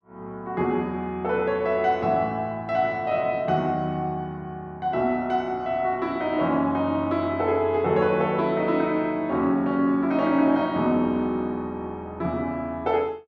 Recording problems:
none

